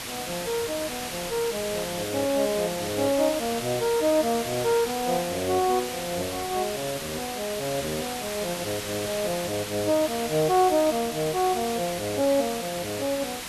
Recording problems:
hiss; slope -1 dB per octave, SNR 6 dB

